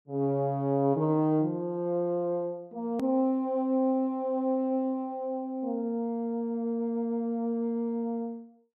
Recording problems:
click at an edit; at 3 s

